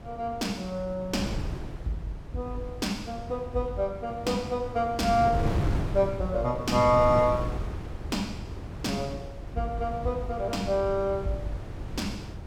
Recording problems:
wind on the microphone; below 280 Hz, SNR 7 dB

